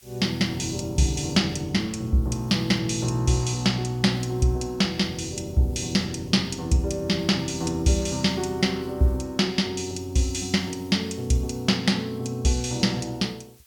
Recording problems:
background hiss; slope +2 dB per octave, SNR 28 dB

